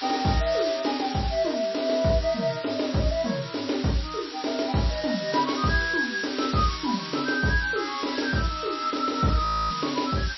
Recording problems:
lossy codec; MP3, log-spectral distance 16 dB, nothing above 5.7 kHz
background hiss; slope +3 dB per octave, SNR 9 dB
frozen audio; at 9.5 s

